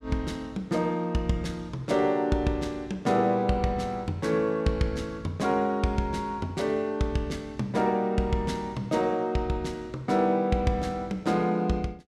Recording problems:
none

